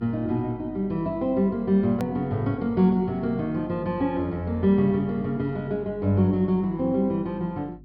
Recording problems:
treble missing; nothing above 5.5 kHz
hum; 50 Hz, harmonics up to 400 Hz, SNR 22 dB
click at an edit; at 2 s

